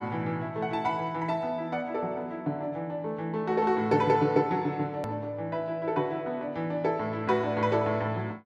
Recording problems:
click at an edit; at 5 s

